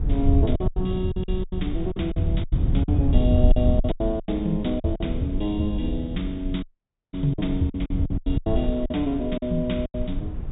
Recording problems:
treble cut off; nothing above 4 kHz
rumble; below 92 Hz, SNR 1 dB
wind noise; below 110 Hz, SNR 19 dB
lost packets; 13% of the sound replaced, filled with silence
audio cutting out; at 6.5 s for 0.5 s

